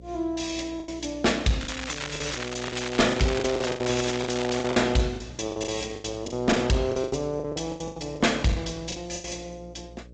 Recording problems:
lossy compression; AAC, then G.722, log-spectral distance 7 dB, nothing above 7.3 kHz
distortion; hard clipping, uneven, signal-to-distortion ratio 11 dB
hum; 60 Hz, harmonics up to 600 Hz, SNR 20 dB
lost packets; 14% of the sound replaced, filled with the last packet
crackle; from 1.5 to 4.5 s; loose cable, SNR 7 dB

